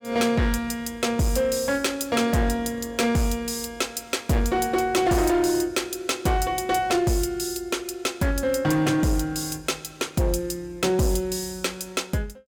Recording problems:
distortion; hard clipping, signal-to-distortion ratio 11 dB

